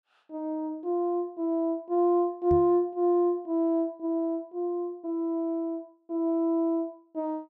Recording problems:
knock on the microphone; at 2.5 s; peak -2 dB vs average level

